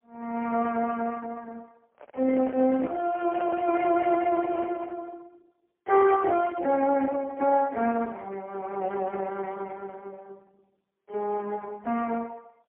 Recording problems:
telephone audio; 280 Hz to 2.8 kHz, AMR-NB, then MP3
handling noise; from 2 to 5 s; peak -4 dB vs average level

